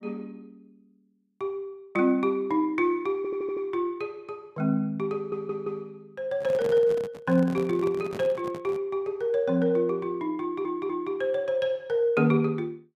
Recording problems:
stutter; at 3 s, at 5 s and at 10 s
handling noise; from 6.5 to 9 s; peak -6 dB vs average level

